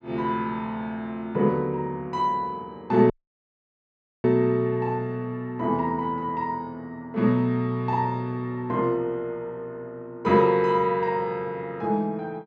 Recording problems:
audio cutting out; at 3 s for 1 s

